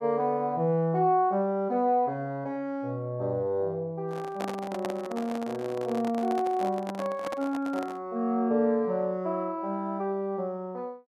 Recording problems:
handling noise; from 4 to 8 s; peak -2 dB vs average level

